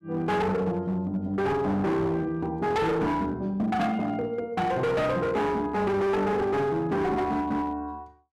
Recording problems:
distortion; hard clipping, signal-to-distortion ratio 8 dB

